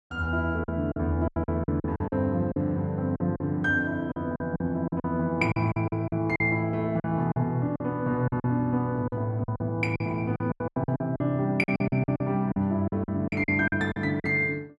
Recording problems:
lost packets; 14% of the sound replaced, filled with silence

